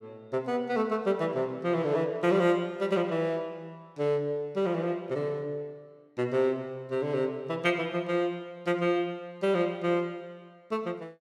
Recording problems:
none

